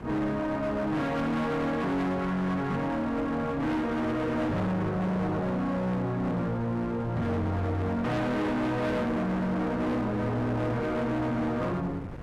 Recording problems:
distorted audio; hard clipping, signal-to-distortion ratio 8 dB
wind on the microphone; below 500 Hz, SNR 14 dB

